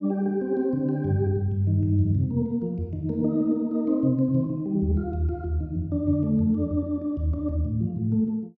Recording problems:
none

